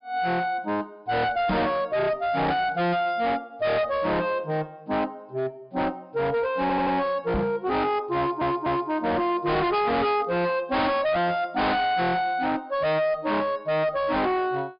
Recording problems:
treble cut off; nothing above 5.1 kHz
distortion; hard clipping, signal-to-distortion ratio 6 dB
knock on the microphone; at 1.5 s and at 7.5 s; peak +2 dB vs average level
stutter; at 6.5 s and at 8 s

